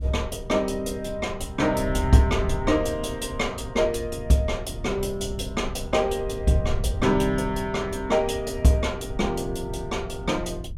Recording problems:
wind noise; below 98 Hz, SNR 9 dB

